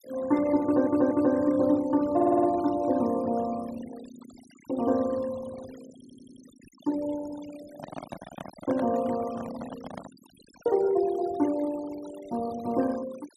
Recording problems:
denoising artefacts; signal-to-artefact ratio 21 dB
audio stuttering; at 0.5 s, at 2 s and at 6 s
microphone handling noise; from 7.5 to 10 s; peak -5 dB vs average level

